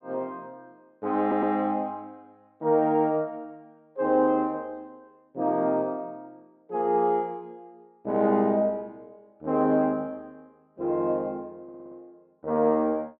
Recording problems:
audio stuttering; at 1 s and at 12 s

